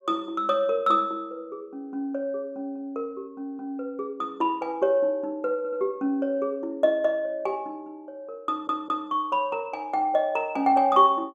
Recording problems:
stutter; at 5.5 s and at 8.5 s

